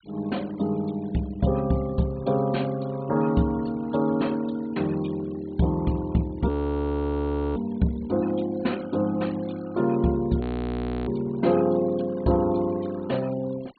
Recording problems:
low-pass filter; nothing above 4.4 kHz
noise reduction artefacts; signal-to-artefact ratio 22 dB
frozen audio; at 6.5 s for 1 s and at 10 s for 0.5 s

